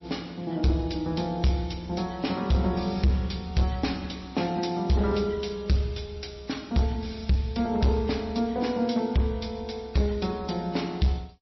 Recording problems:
codec artefacts; MP3, log-spectral distance 6 dB, nothing above 5.7 kHz
distorted audio; hard clipping, uneven, signal-to-distortion ratio 10 dB

